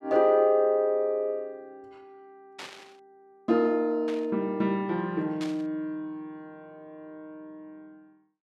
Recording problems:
burst of static; at 2.5 s, at 4 s and at 5.5 s; peak -10 dB vs average level

